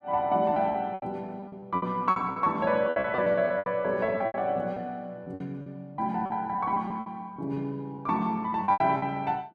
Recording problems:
lost packets; 14% of the sound replaced, filled with repeated pitch periods

